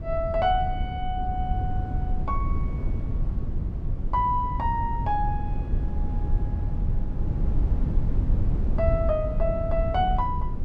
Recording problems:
low-frequency rumble; below 94 Hz, SNR 1 dB

